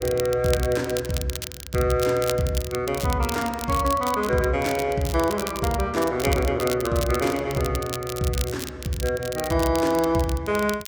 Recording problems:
crackle; vinyl, SNR 11 dB

